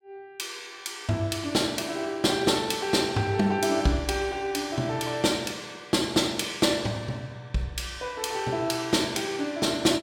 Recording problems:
none

